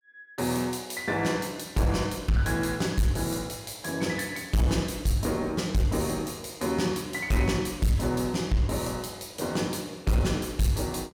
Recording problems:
distortion; hard clipping, signal-to-distortion ratio 12 dB

